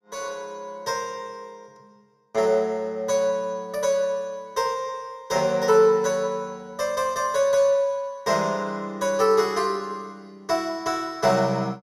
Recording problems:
none

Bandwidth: 15.5 kHz